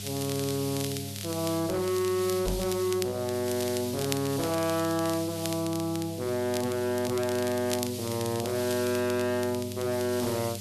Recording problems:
distortion; hard clipping, uneven, signal-to-distortion ratio 7 dB
hum; 50 Hz, harmonics up to 700 Hz, SNR 12 dB
hiss; SNR 10 dB
crackling; vinyl, SNR 12 dB
microphone bump; at 2.5 s; peak +1 dB vs average level

